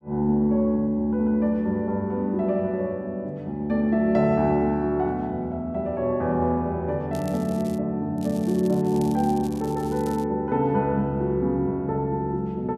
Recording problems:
crackle; at 7 s and from 8 to 10 s; loose cable, SNR 22 dB

